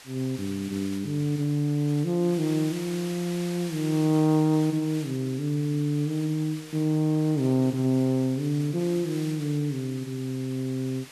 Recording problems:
hiss; slope +1 dB per octave, SNR 17 dB

